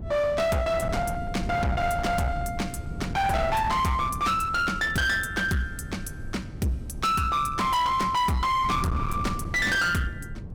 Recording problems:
distortion; hard clipping, uneven, signal-to-distortion ratio 7 dB
wind noise; below 240 Hz, SNR 9 dB

